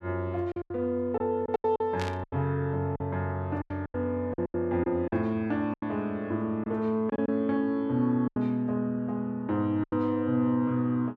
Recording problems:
packet loss; 10% of the sound replaced, filled with silence
static burst; at 2 s; peak -4 dB vs average level

